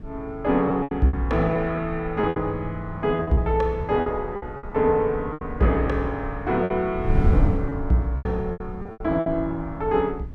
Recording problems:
wind on the microphone; below 110 Hz, SNR 8 dB
lost packets; 11% of the sound replaced, filled with repeated pitch periods

